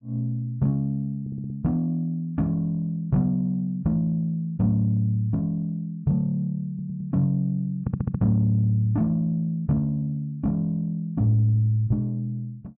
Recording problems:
stutter; at 1 s, at 6.5 s and at 8 s

